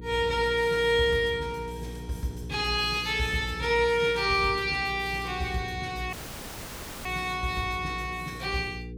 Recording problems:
hum; 60 Hz, harmonics up to 480 Hz, SNR 14 dB
audio cutting out; at 6 s for 1 s

